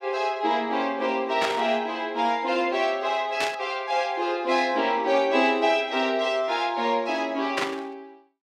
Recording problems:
burst of static; at 1.5 s, at 3.5 s and at 7.5 s; peak +1 dB vs average level

